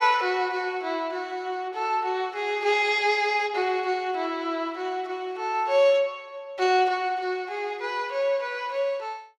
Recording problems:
none

